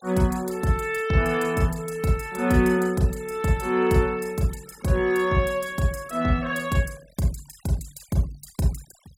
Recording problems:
noise reduction artefacts; signal-to-artefact ratio 23 dB

